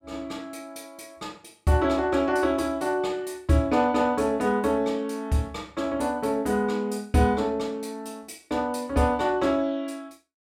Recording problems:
none

